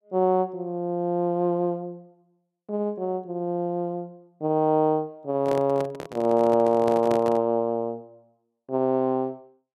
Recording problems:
microphone handling noise; from 5.5 to 7.5 s; peak -4 dB vs average level

